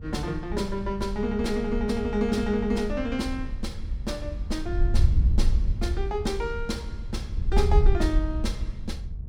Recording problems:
hum; 60 Hz, harmonics up to 660 Hz, SNR 20 dB
wind on the microphone; below 72 Hz, SNR 0 dB

